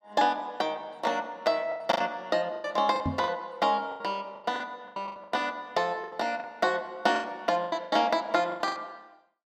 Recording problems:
lost packets; 14% of the sound replaced, filled with the last packet
microphone thump; at 3 s; peak +2 dB vs average level

